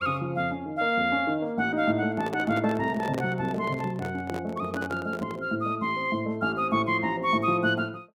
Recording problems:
microphone handling noise; from 2 to 5.5 s; peak -3 dB vs average level

